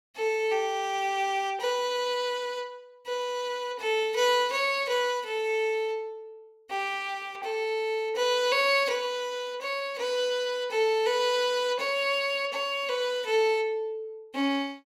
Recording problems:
none

